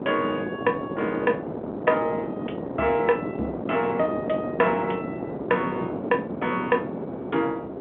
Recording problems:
phone line; 240 Hz to 3.3 kHz, G.711
wind on the microphone; below 570 Hz, SNR 5 dB

